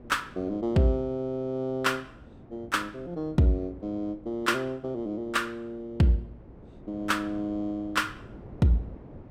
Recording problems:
wind on the microphone; below 390 Hz, SNR 20 dB

